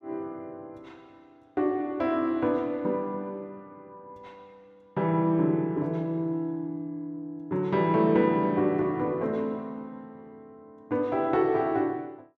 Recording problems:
none

